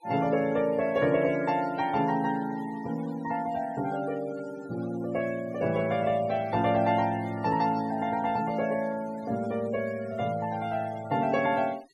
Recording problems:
denoising artefacts; signal-to-artefact ratio 19 dB

